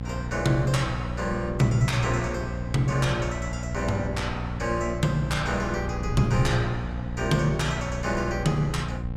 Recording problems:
electrical hum; 60 Hz, harmonics up to 1 kHz, SNR 6 dB
wind noise; below 110 Hz, SNR 13 dB

